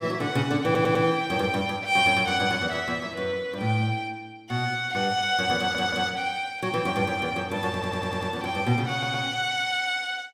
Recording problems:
audio stuttering; 4 times, first at 0.5 s

